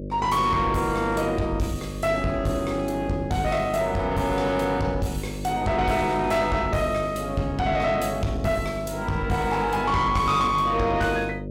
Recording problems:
distortion; soft clipping, signal-to-distortion ratio 11 dB
hum; 50 Hz, harmonics up to 600 Hz, SNR 9 dB

